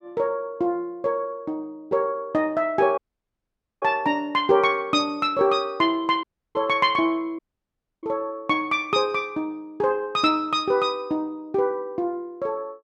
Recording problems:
audio cutting out; at 3 s for 1 s, at 6 s and at 7.5 s for 0.5 s

